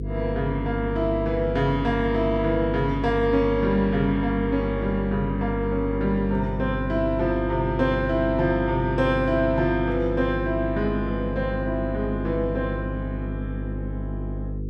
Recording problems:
mains hum; 50 Hz, harmonics up to 500 Hz, SNR 6 dB

